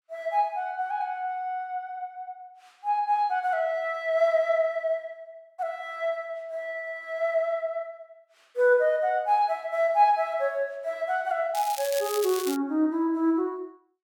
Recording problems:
crackle; from 12 to 13 s; loose cable, SNR 10 dB

